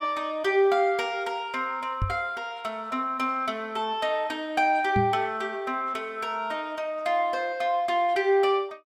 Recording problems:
knock on the microphone; at 2 s and at 5 s; peak +2 dB vs average level

